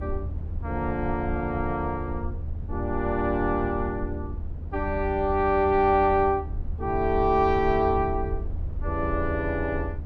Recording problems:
low-frequency rumble; below 80 Hz, SNR 8 dB

